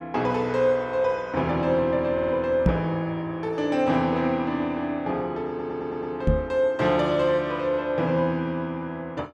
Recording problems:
stutter; at 2 s and at 5.5 s
knock on the microphone; at 2.5 s and at 6.5 s; peak +7 dB vs average level

